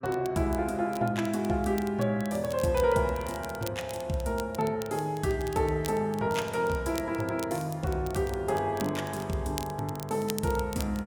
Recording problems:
crackling; vinyl, SNR 16 dB

